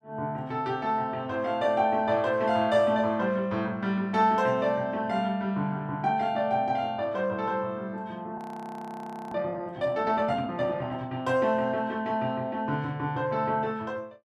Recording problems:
audio freezing; at 8.5 s for 1 s

